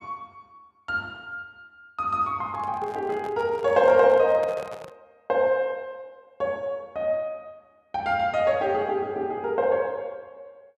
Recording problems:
handling noise; from 2.5 to 5 s; peak -10 dB vs average level

